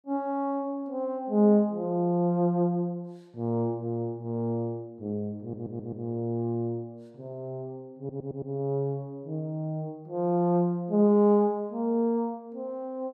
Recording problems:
audio stuttering; at 5.5 s and at 8 s

